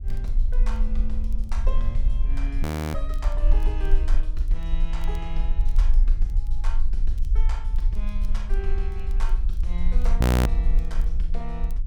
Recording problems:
low-frequency rumble; below 42 Hz, strongest tone 22 Hz, SNR -13 dB
crackling; vinyl, SNR 22 dB
frozen audio; at 2.5 s and at 10 s

